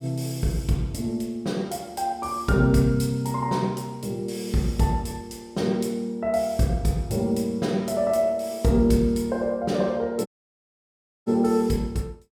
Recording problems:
dropout; at 10 s for 1 s

